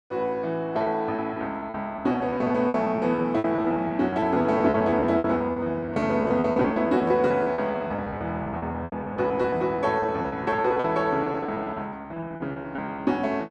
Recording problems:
packet loss; 19% of the sound replaced, filled with repeated pitch periods

